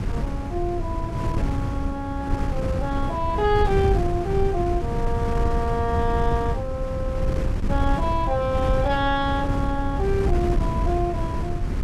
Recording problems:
wind on the microphone; below 140 Hz, SNR 0 dB

